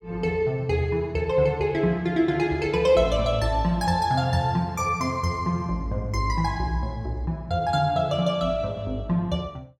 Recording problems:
none

